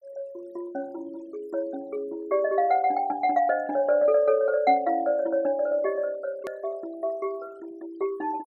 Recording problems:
denoising artefacts; signal-to-artefact ratio 26 dB
hard cut with a click; at 6.5 s

